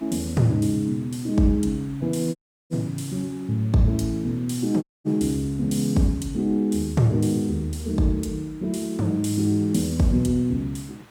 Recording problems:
hiss; SNR 27 dB
dropout; at 2.5 s and at 5 s

